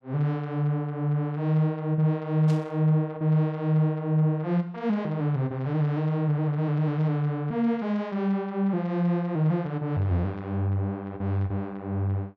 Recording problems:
burst of static; at 2.5 s; peak -14 dB vs average level

